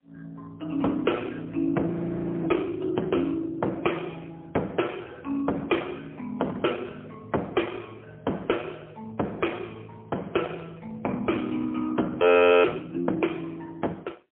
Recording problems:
phone line; 240 Hz to 3.3 kHz, AMR-NB, then MP3
frozen audio; at 2 s for 0.5 s and at 12 s

